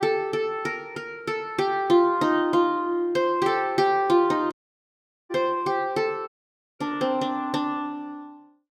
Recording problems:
audio cutting out; at 4.5 s for 1 s and at 6.5 s for 0.5 s

